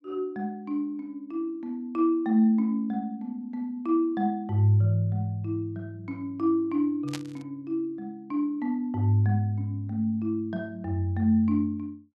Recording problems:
burst of static; at 7 s; peak -5 dB vs average level

